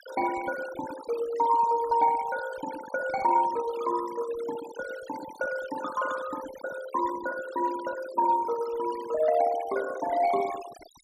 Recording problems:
noise reduction artefacts; signal-to-artefact ratio 14 dB

